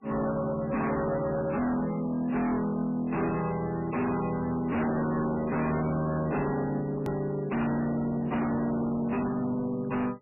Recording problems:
codec artefacts; MP3, log-spectral distance 3 dB, nothing above 2.6 kHz
distortion; hard clipping, signal-to-distortion ratio 6 dB
edit click; at 7 s

